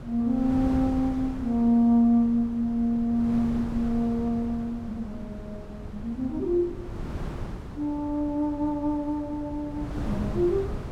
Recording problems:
wind noise; below 260 Hz, SNR 11 dB

